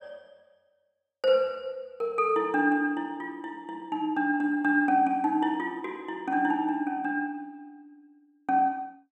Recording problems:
none

